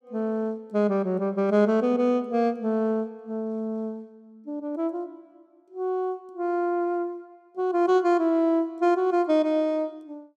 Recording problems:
none

